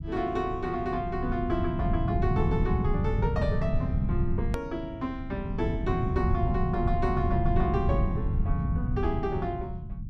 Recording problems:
low-frequency rumble; below 150 Hz, SNR -2 dB
click at an edit; at 4.5 s

